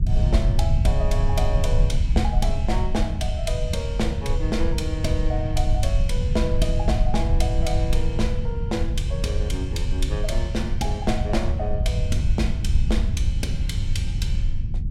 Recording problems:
low-frequency rumble; below 86 Hz, SNR -4 dB

